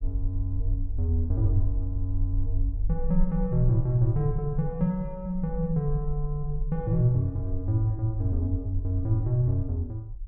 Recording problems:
low-frequency rumble; below 44 Hz, SNR 7 dB

